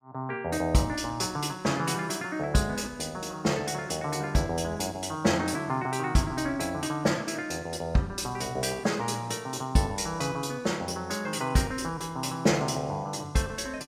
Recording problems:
none

